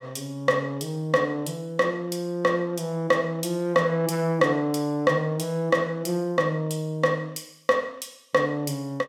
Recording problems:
none

